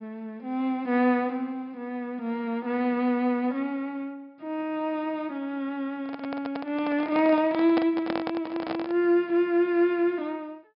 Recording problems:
low-pass filter; nothing above 5.5 kHz
handling noise; from 6 to 9 s; peak +1 dB vs average level

